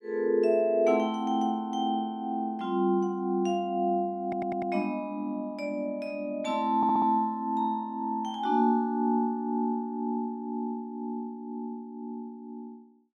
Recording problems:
audio stuttering; at 4 s and at 7 s

